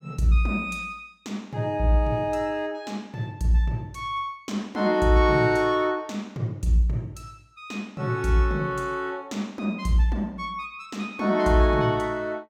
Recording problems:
none

